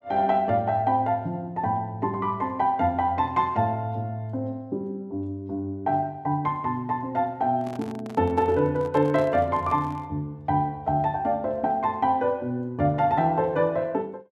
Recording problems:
handling noise; from 7.5 to 10 s; peak -11 dB vs average level

